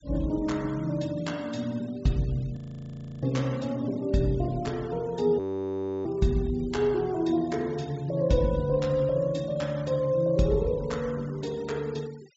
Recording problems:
low-pass filter; nothing above 8 kHz
noise reduction artefacts; signal-to-artefact ratio 24 dB
audio freezing; at 2.5 s for 0.5 s and at 5.5 s for 0.5 s

